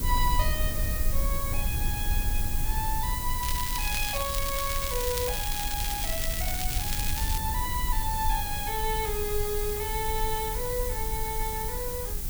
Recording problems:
hiss; slope +2 dB per octave, SNR 0 dB
rumble; below 68 Hz, SNR 1 dB
crackling; from 3.5 to 7.5 s; loose cable, SNR 1 dB

